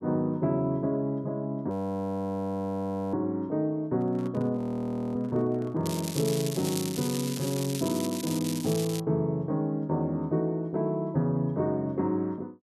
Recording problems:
frozen audio; at 1.5 s for 1.5 s and at 4.5 s for 0.5 s
handling noise; from 4 to 8 s; peak -10 dB vs average level
crackling; from 6 to 9 s; loose cable, SNR 8 dB

